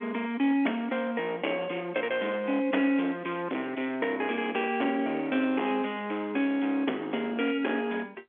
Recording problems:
telephone audio; 240 Hz to 3.5 kHz, G.711
distortion; hard clipping, uneven, signal-to-distortion ratio 10 dB

